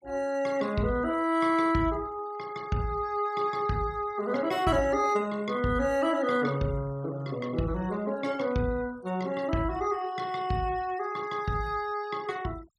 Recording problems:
noise reduction artefacts; signal-to-artefact ratio 22 dB

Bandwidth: 16.5 kHz